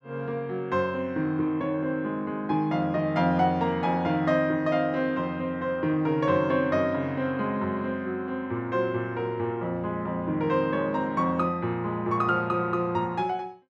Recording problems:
none

